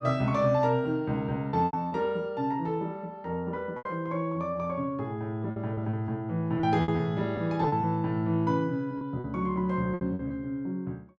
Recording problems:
packet loss; 7% of the sound replaced, filled with repeated pitch periods

